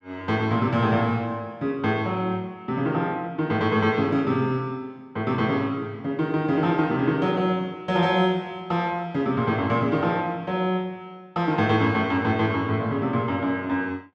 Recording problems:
none

